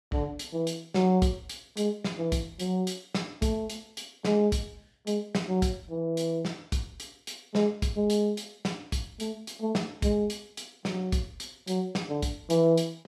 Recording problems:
none

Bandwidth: 14 kHz